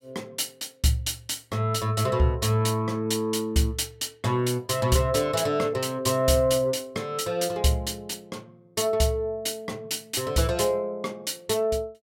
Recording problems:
none

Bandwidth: 16.5 kHz